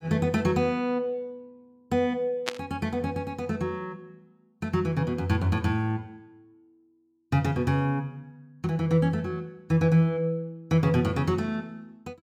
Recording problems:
static burst; at 2.5 s; peak +2 dB vs average level

